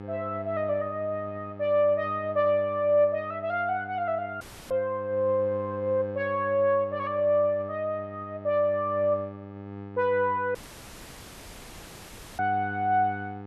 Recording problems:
hum; 50 Hz, harmonics up to 1.7 kHz, SNR 14 dB
audio cutting out; at 4.5 s and at 11 s for 2 s

